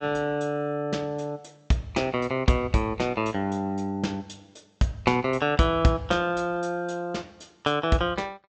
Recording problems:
low-pass filter; nothing above 8 kHz

